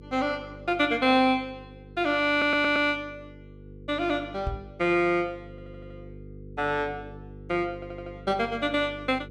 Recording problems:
hum; 50 Hz, harmonics up to 500 Hz, SNR 19 dB
stutter; at 2.5 s, at 5.5 s and at 7.5 s
microphone thump; at 4.5 s; peak -2 dB vs average level

